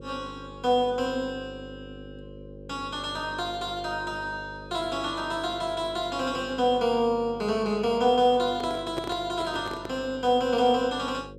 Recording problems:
hum; 50 Hz, harmonics up to 550 Hz, SNR 17 dB
microphone handling noise; from 8.5 to 10 s; peak -2 dB vs average level

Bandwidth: 15 kHz